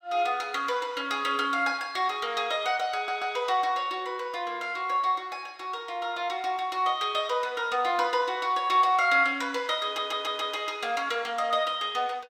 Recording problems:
stutter; at 3 s and at 10 s

